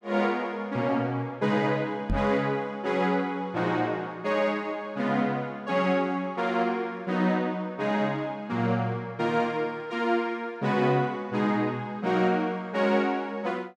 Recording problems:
knock on the microphone; at 2 s; peak +2 dB vs average level

